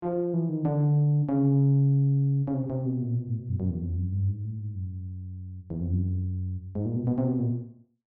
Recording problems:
none

